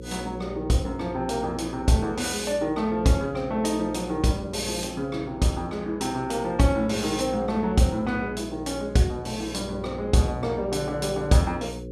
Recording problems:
hum; 60 Hz, harmonics up to 540 Hz, SNR 12 dB

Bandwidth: 15 kHz